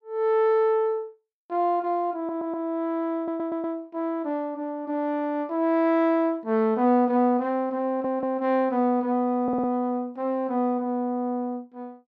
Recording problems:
stutter; 4 times, first at 2 s

